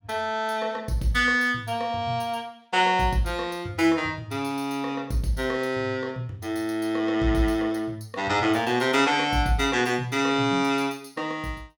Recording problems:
none

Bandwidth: 17.5 kHz